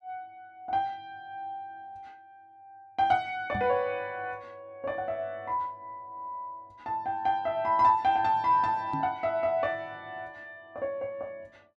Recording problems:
microphone bump; at 3.5 s and at 9 s; peak -3 dB vs average level

